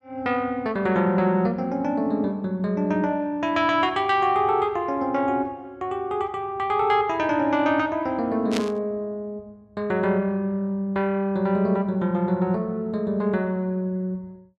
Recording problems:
burst of static; at 8.5 s; peak -1 dB vs average level

